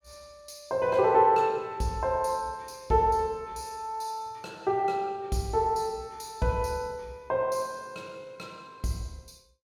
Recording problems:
none

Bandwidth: 17 kHz